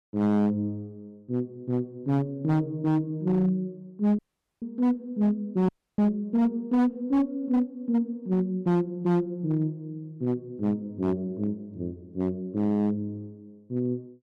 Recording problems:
distortion; hard clipping, signal-to-distortion ratio 11 dB
audio cutting out; at 4 s and at 5.5 s

